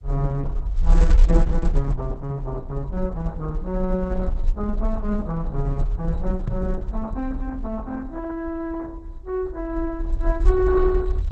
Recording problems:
lossy codec; Opus, log-spectral distance 2 dB, nothing above 13.1 kHz
low-frequency rumble; below 48 Hz, strongest tone 32 Hz, SNR -2 dB
knock on the microphone; at 6.5 s; peak +6 dB vs average level

